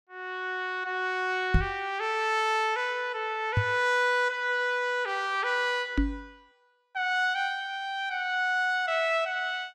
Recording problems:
microphone thump; at 1.5 s, at 3.5 s and at 6 s; peak +7 dB vs average level

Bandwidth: 16 kHz